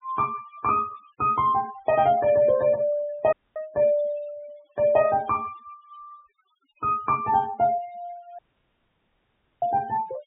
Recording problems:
low-pass filter; nothing above 4 kHz
denoising artefacts; signal-to-artefact ratio 20 dB
dropout; at 3.5 s and at 8.5 s for 1 s

